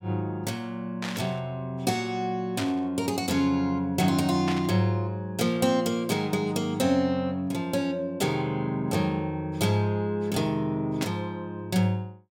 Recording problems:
static burst; 4 times, first at 1 s; peak -3 dB vs average level

